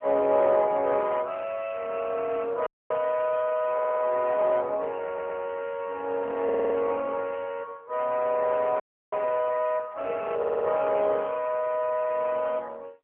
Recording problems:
telephone audio; 370 Hz to 3.1 kHz, AMR-NB
dropout; at 2.5 s and at 9 s
stutter; 4 times, first at 3.5 s

